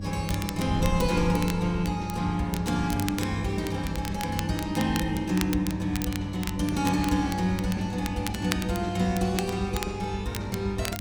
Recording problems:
electrical hum; 50 Hz, harmonics up to 600 Hz, SNR 9 dB
wind on the microphone; below 120 Hz, SNR 15 dB
crackling; vinyl, SNR 11 dB

